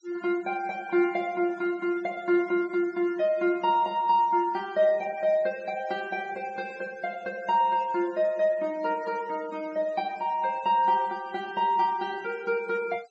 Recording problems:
low-pass filter; nothing above 8 kHz
denoising artefacts; signal-to-artefact ratio 24 dB

